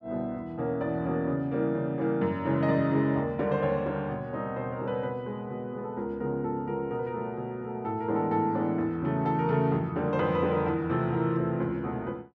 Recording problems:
none

